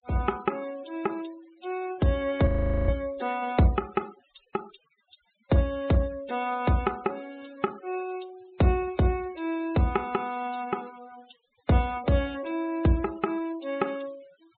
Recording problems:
treble cut off; nothing above 4 kHz
denoising artefacts; signal-to-artefact ratio 23 dB
frozen audio; at 2.5 s

